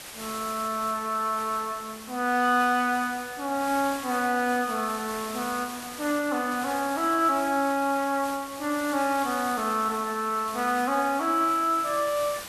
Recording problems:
background hiss; slope -1 dB per octave, SNR 13 dB

